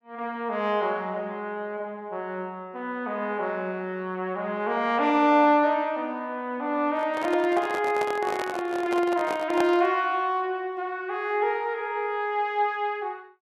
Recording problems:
microphone handling noise; from 7 to 10 s; peak +1 dB vs average level

